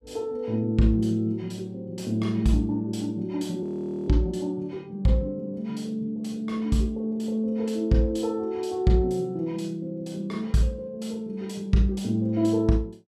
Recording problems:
audio freezing; at 3.5 s

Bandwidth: 14.5 kHz